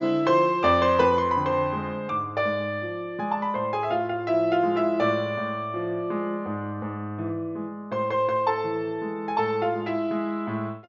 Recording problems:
treble missing; nothing above 7.2 kHz

